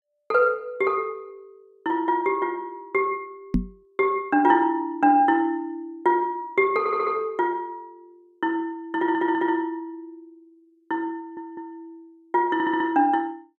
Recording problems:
microphone bump; at 3.5 s; peak +5 dB vs average level
stutter; 4 times, first at 7 s

